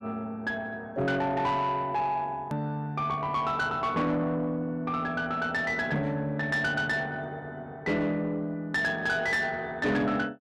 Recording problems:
distortion; soft clipping, signal-to-distortion ratio 11 dB
edit click; at 2.5 s

